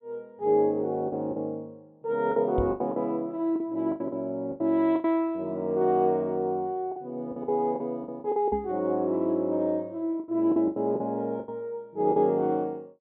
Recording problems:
treble cut off; nothing above 4 kHz
lost packets; 10% of the sound replaced, filled with the last packet
knock on the microphone; at 2.5 s and at 8.5 s; peak -1 dB vs average level

